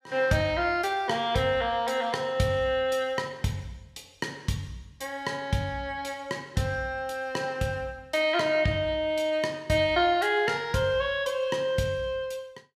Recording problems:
none

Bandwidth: 15 kHz